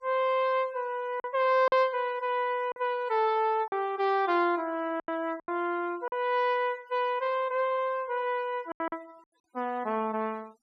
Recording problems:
noise reduction artefacts; signal-to-artefact ratio 27 dB
packet loss; 5% of the sound replaced, filled with silence

